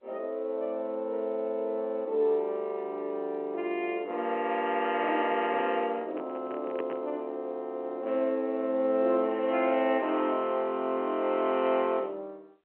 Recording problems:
telephone audio; 220 Hz to 3.3 kHz, G.711
handling noise; from 5 to 7 s; peak -3 dB vs average level

